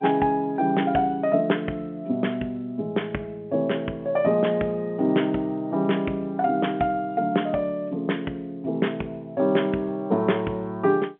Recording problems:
phone line; 190 Hz to 3.4 kHz, G.711

